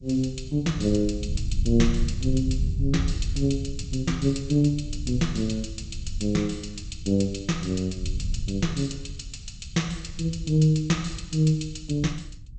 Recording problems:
codec artefacts; G.722, log-spectral distance 5 dB, nothing above 8.2 kHz
low-frequency rumble; below 92 Hz, SNR 8 dB

